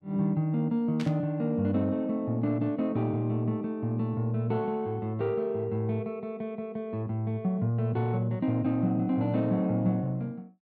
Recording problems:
burst of static; at 1 s; peak -7 dB vs average level

